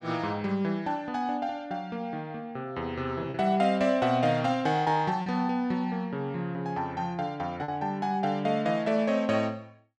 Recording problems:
packet loss; 1.4% of the sound replaced, filled with repeated pitch periods

